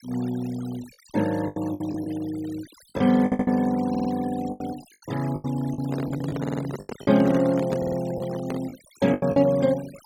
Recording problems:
noise reduction artefacts; signal-to-artefact ratio 19 dB
lost packets; 9% of the sound replaced, filled with the last packet
audio stuttering; 4 times, first at 3 s
microphone handling noise; from 6 to 8.5 s; peak -2 dB vs average level

